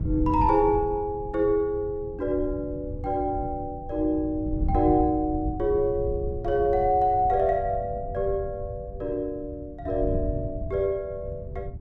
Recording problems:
wind noise; below 110 Hz, SNR 9 dB

